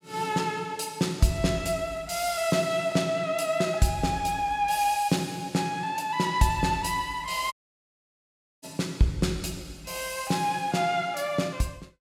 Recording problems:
audio cutting out; at 7.5 s for 1 s

